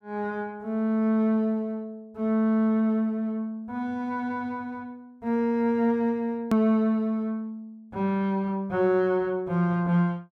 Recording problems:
click at an edit; at 6.5 s

